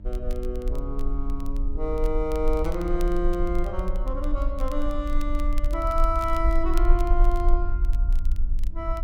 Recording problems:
mains hum; 50 Hz, harmonics up to 900 Hz, SNR 18 dB
rumble; below 42 Hz, strongest tone 24 Hz, SNR -1 dB
crackle; vinyl, SNR 22 dB

